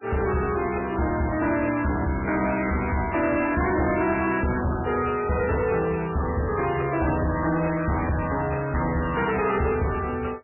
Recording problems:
codec artefacts; MP3, log-spectral distance 5 dB, nothing above 2.5 kHz
distorted audio; soft clipping, signal-to-distortion ratio 11 dB

